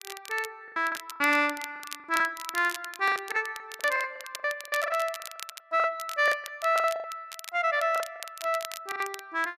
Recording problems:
crackle; vinyl, SNR 13 dB
packet loss; 17% of the sound replaced, filled with the last packet

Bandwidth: 14.5 kHz